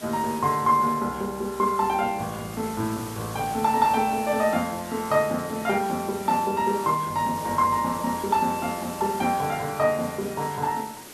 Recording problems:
hiss; slope -3 dB per octave, SNR 15 dB

